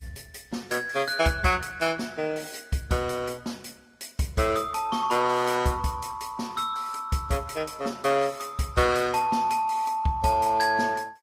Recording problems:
lossy compression; Vorbis, then Opus, log-spectral distance 4 dB

